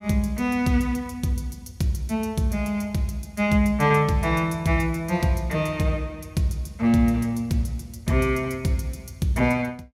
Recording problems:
none

